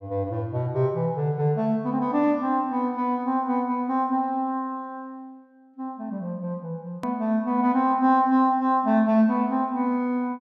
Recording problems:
edit click; at 7 s

